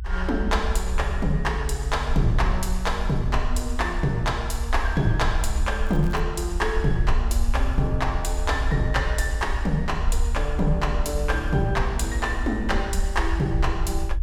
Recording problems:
low-frequency rumble; below 64 Hz, SNR 2 dB
crackling; at 6 s; loose cable, SNR 24 dB

